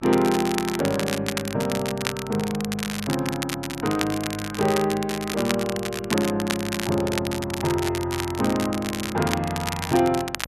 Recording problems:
electrical hum; 50 Hz, harmonics up to 1.4 kHz, SNR 19 dB
crackling; vinyl, SNR 6 dB

